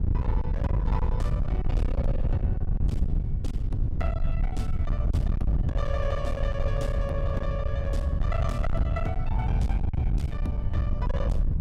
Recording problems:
distorted audio; hard clipping, uneven, signal-to-distortion ratio 7 dB
wind noise; below 98 Hz, SNR -7 dB

